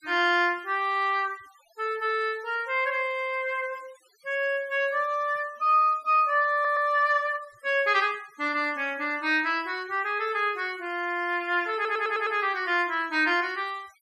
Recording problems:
denoising artefacts; signal-to-artefact ratio 27 dB
stutter; at 6.5 s and at 12 s

